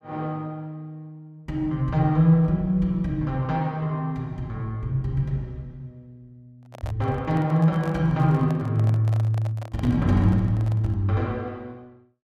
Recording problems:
microphone handling noise; from 6.5 to 11 s; peak -11 dB vs average level

